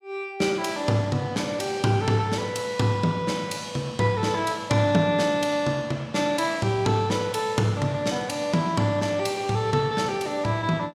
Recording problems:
none

